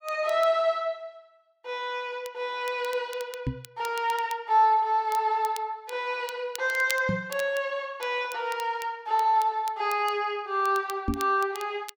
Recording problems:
crackling; vinyl, SNR 18 dB
microphone bump; at 3.5 s, at 7 s and at 11 s; peak +3 dB vs average level

